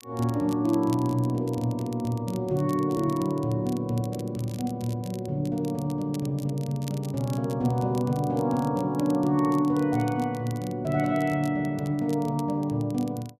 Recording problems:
crackle; vinyl, SNR 22 dB

